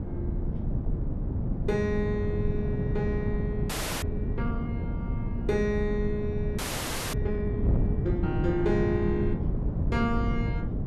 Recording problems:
wind on the microphone; below 180 Hz, SNR -1 dB
frozen audio; at 3.5 s and at 6.5 s for 0.5 s

